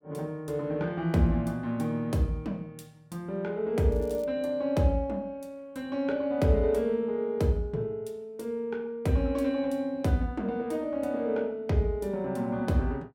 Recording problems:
crackle; at 4 s; loose cable, SNR 28 dB

